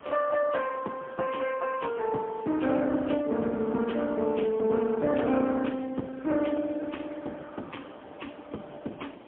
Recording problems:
phone line; 170 Hz to 3.3 kHz, AMR-NB, then MP3
background hiss; SNR 20 dB

